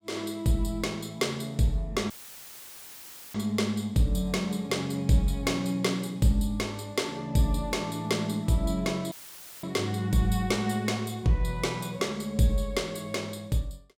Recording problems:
audio cutting out; at 2 s for 1 s and at 9 s for 0.5 s; filled with static

